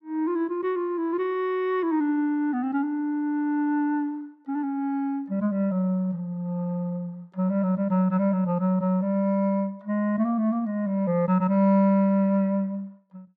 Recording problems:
none

